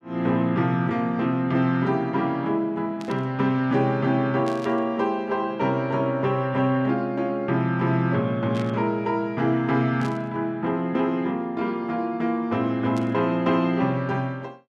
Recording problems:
burst of static; 5 times, first at 3 s; peak -12 dB vs average level

